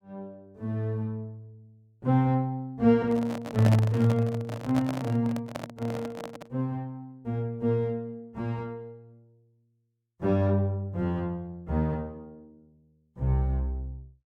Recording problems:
microphone handling noise; from 3 to 6.5 s; peak +1 dB vs average level

